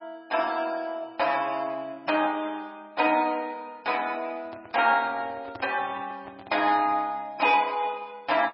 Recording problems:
codec artefacts; MP3, log-spectral distance 3 dB, nothing above 5.3 kHz
microphone handling noise; from 4.5 to 7 s; peak -11 dB vs average level

